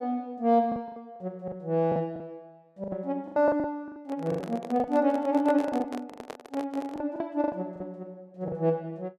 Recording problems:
lost packets; 13% of the sound replaced, filled with the last packet
handling noise; from 4 to 7 s; peak -2 dB vs average level

